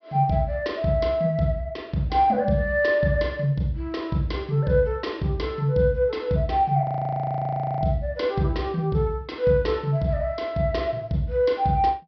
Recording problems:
treble cut off; nothing above 5.5 kHz
audio freezing; at 7 s for 1 s

